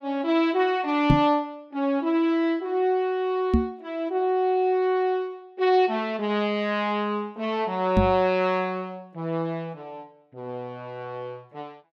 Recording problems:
microphone bump; at 1 s, at 3.5 s and at 8 s; peak +9 dB vs average level

